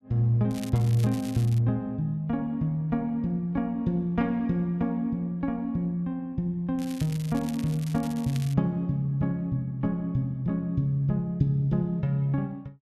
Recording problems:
crackle; from 0.5 to 1.5 s and from 7 to 8.5 s; loose cable, SNR 18 dB

